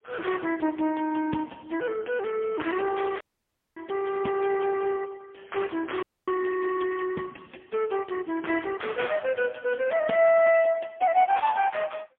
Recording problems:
telephone audio; 220 Hz to 3 kHz, AMR-NB, then MP3
audio cutting out; at 3 s for 0.5 s and at 6 s

